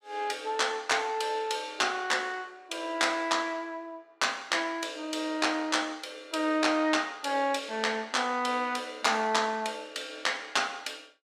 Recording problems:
none

